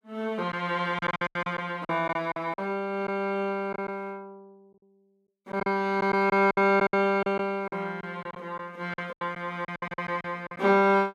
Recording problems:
packet loss; 12% of the sound replaced, filled with silence

